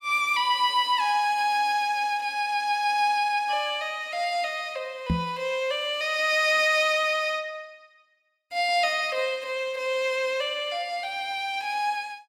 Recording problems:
microphone thump; at 5 s; peak +3 dB vs average level

